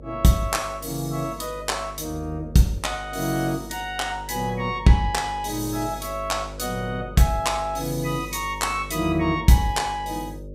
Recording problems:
hum; 50 Hz, harmonics up to 600 Hz, SNR 15 dB

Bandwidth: 15.5 kHz